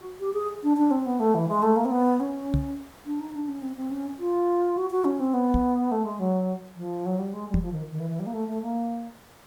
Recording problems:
background hiss; SNR 25 dB
microphone thump; at 2.5 s, at 5.5 s and at 7.5 s; peak +5 dB vs average level

